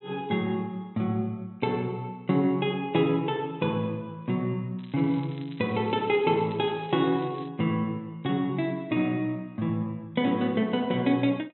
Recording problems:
treble missing; nothing above 4 kHz
crackling; from 5 to 7.5 s; loose cable, SNR 24 dB

